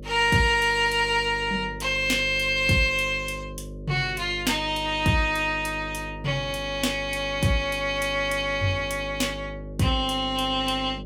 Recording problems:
mains hum; 50 Hz, harmonics up to 600 Hz, SNR 14 dB

